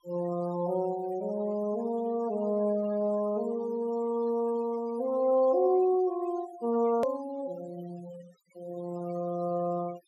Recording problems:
noise reduction artefacts; signal-to-artefact ratio 19 dB
hard cut with a click; at 7 s

